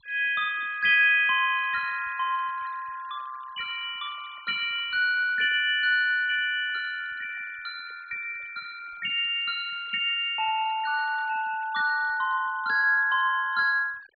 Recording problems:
treble cut off; nothing above 4.2 kHz
noise reduction artefacts; signal-to-artefact ratio 21 dB

